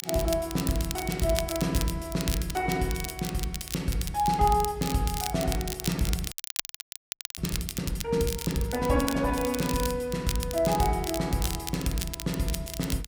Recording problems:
crackle; vinyl, SNR 8 dB
frozen audio; at 6.5 s for 1 s

